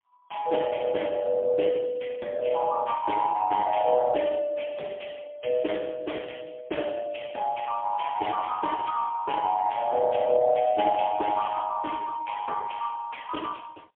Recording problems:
telephone audio; 220 Hz to 3.3 kHz, AMR-NB, then MP3

